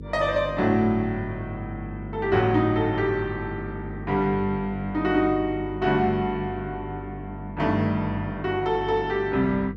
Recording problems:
mains hum; 50 Hz, harmonics up to 500 Hz, SNR 12 dB

